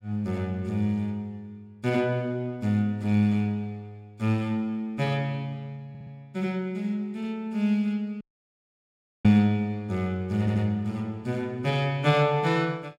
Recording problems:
stutter; at 6 s and at 10 s
audio cutting out; at 8 s for 1 s

